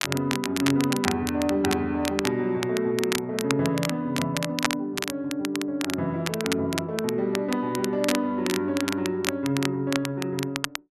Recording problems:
crackle; vinyl, SNR 6 dB

